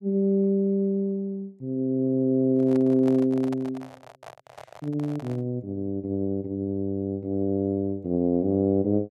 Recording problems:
handling noise; from 2.5 to 5.5 s; peak -10 dB vs average level

